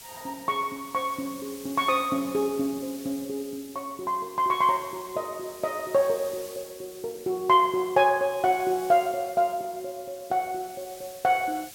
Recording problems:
hiss; SNR 18 dB

